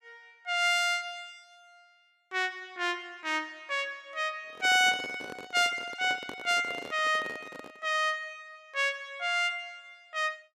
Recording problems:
handling noise; from 4.5 to 8 s; peak -8 dB vs average level

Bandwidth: 14.5 kHz